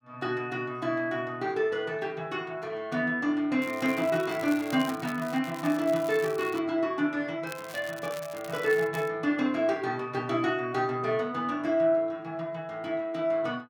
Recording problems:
crackle; from 3.5 to 6.5 s and from 7.5 to 9 s; loose cable, SNR 17 dB

